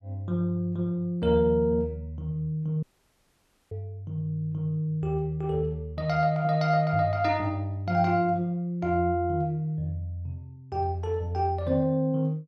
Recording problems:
dropout; at 3 s for 1 s

